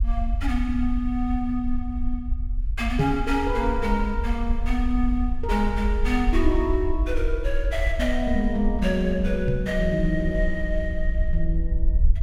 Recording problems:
low-frequency rumble; below 54 Hz, SNR 2 dB
microphone thump; at 3 s and at 9.5 s; peak +7 dB vs average level

